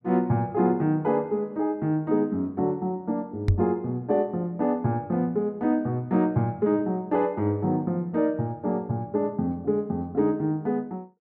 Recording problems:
knock on the microphone; at 3.5 s; peak +7 dB vs average level

